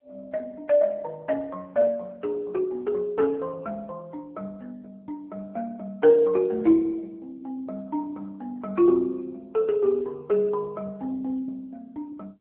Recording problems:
phone line; 240 Hz to 2.2 kHz, AMR-NB

